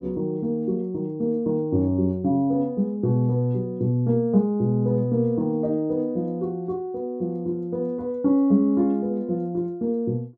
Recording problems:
none

